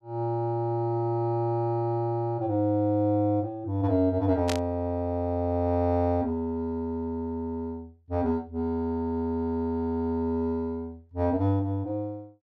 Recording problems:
static burst; at 4.5 s; peak -1 dB vs average level

